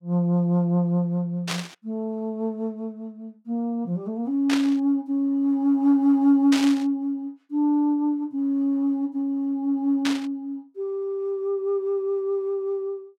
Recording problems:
static burst; 4 times, first at 1.5 s; peak 0 dB vs average level

